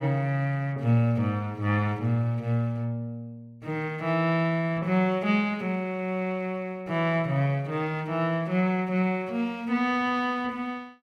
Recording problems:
none

